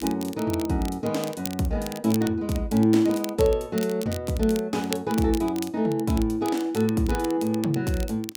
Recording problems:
crackle; vinyl, SNR 15 dB

